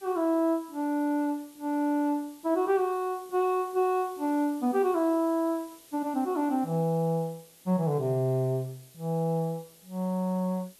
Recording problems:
hiss; SNR 24 dB

